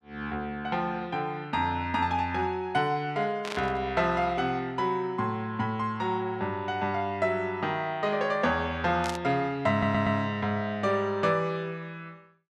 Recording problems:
burst of static; at 3.5 s and at 9 s; peak -2 dB vs average level
audio stuttering; at 9.5 s

